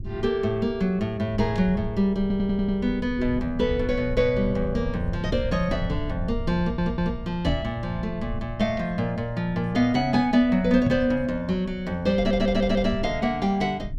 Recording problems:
rumble; below 110 Hz, SNR 11 dB
audio stuttering; at 2 s, at 6.5 s and at 12 s
microphone bump; at 7.5 s and at 11 s; peak +3 dB vs average level

